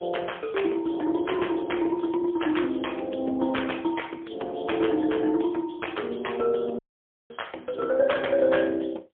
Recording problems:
telephone audio; 260 Hz to 3.4 kHz, AMR-NB, then MP3
audio cutting out; at 7 s for 0.5 s

